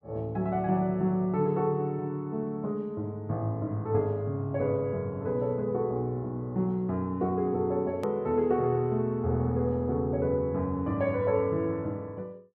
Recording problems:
click at an edit; at 8 s

